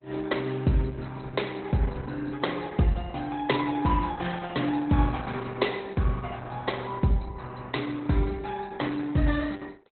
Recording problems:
lossy codec; Opus, log-spectral distance 8 dB, nothing above 4.1 kHz

